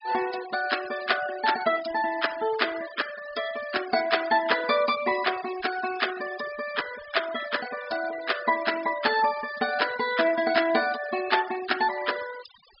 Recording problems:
treble cut off; nothing above 5.5 kHz
noise reduction artefacts; signal-to-artefact ratio 14 dB

